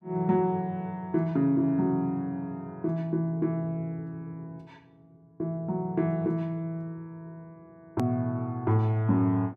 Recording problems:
click at an edit; at 8 s

